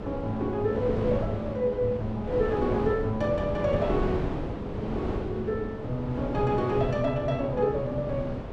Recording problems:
wind on the microphone; below 480 Hz, SNR 5 dB

